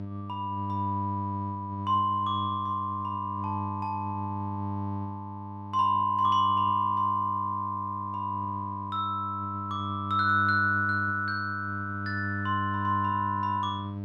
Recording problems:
hum; 50 Hz, harmonics up to 900 Hz, SNR 8 dB

